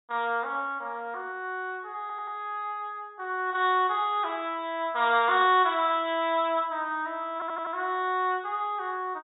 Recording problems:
treble cut off; nothing above 4 kHz
stutter; at 2 s and at 7.5 s

